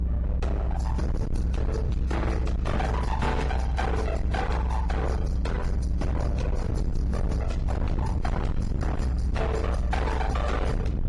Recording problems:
codec artefacts; AAC, then AAC, log-spectral distance 2 dB, nothing above 11 kHz
distortion; hard clipping, uneven, signal-to-distortion ratio 5 dB
rumble; below 130 Hz, strongest tone 62 Hz, SNR -3 dB

